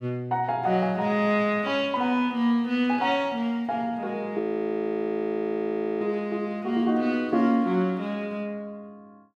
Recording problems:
audio freezing; at 4.5 s for 1.5 s

